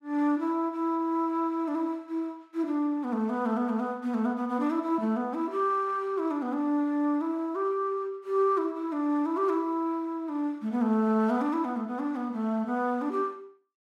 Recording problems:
none

